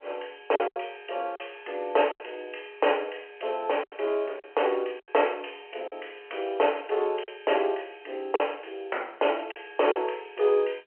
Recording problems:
phone line; 340 Hz to 3.2 kHz, G.711
lost packets; 6% of the sound replaced, filled with silence

